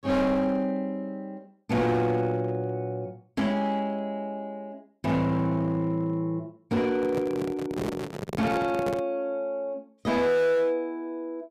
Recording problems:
distorted audio; hard clipping, signal-to-distortion ratio 11 dB
microphone handling noise; from 7 to 9 s; peak -1 dB vs average level

